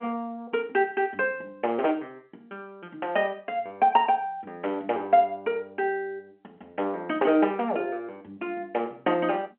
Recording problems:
phone line; 240 Hz to 3.5 kHz, G.711

